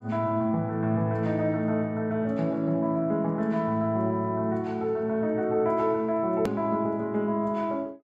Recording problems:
edit click; at 6.5 s

